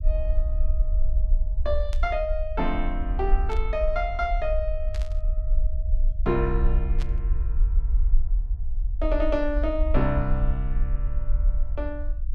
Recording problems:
rumble; below 50 Hz, SNR -1 dB
burst of static; 4 times, first at 2 s; peak -8 dB vs average level

